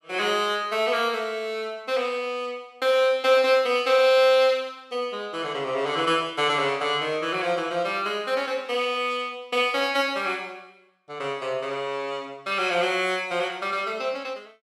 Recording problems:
none

